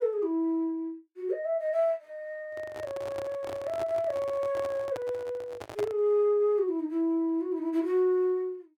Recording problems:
microphone handling noise; from 2.5 to 6 s; peak -4 dB vs average level

